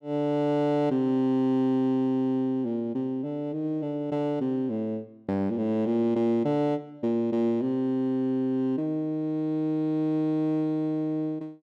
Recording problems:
none

